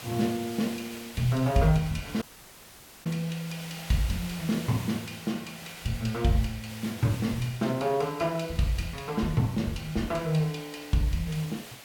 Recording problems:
hiss; slope -1 dB per octave, SNR 14 dB
dropout; at 2 s for 1 s

